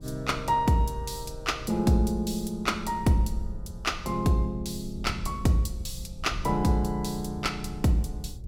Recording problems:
wind on the microphone; below 88 Hz, SNR 13 dB

